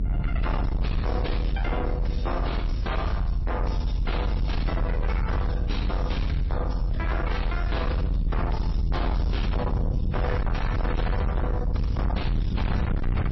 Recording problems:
codec artefacts; MP3, then AAC, log-spectral distance 2 dB, nothing above 5.7 kHz
distortion; soft clipping, signal-to-distortion ratio 6 dB
rumble; below 100 Hz, SNR -3 dB

